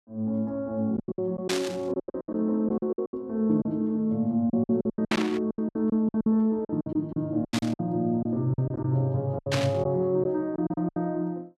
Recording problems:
packet loss; 15% of the sound replaced, filled with silence
burst of static; 4 times, first at 1.5 s; peak +3 dB vs average level

